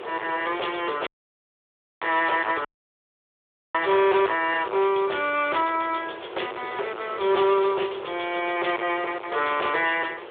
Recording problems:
phone line; 320 Hz to 3.6 kHz, Speex
distortion; hard clipping, uneven, signal-to-distortion ratio 6 dB
background hiss; SNR 15 dB
dropout; at 1 s for 1 s and at 2.5 s for 1 s

